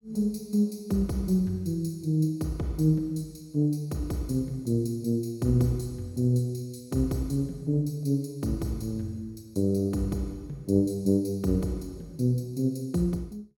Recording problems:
none

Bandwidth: 18 kHz